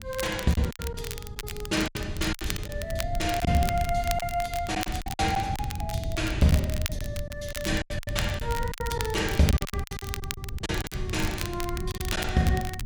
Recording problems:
low-frequency rumble; below 120 Hz, SNR 7 dB
crackle; vinyl, SNR 9 dB
packet loss; 11% of the sound replaced, filled with silence

